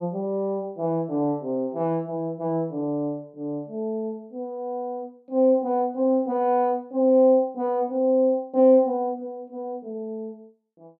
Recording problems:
none

